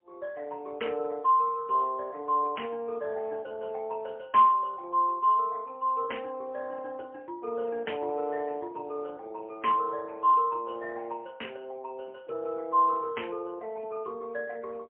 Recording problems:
phone line; 300 Hz to 3.2 kHz, AMR-NB, then MP3

